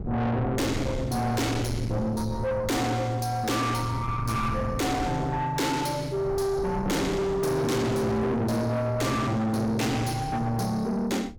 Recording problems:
distorted audio; soft clipping, signal-to-distortion ratio 6 dB
wind noise; below 280 Hz, SNR 9 dB

